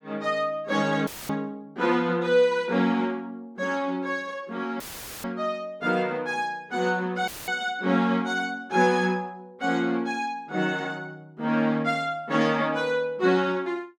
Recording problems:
audio cutting out; at 1 s, at 5 s and at 7.5 s; filled with static

